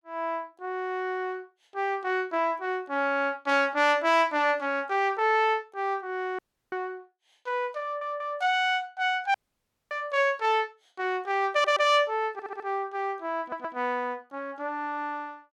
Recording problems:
dropout; at 6.5 s and at 9.5 s for 0.5 s
stutter; 4 times, first at 8 s

